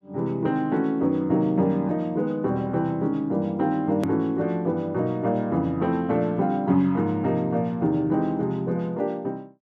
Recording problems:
edit click; at 4 s

